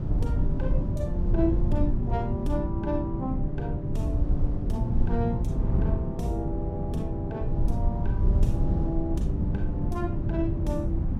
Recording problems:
rumble; below 90 Hz, SNR -1 dB
wind on the microphone; below 160 Hz, SNR -1 dB

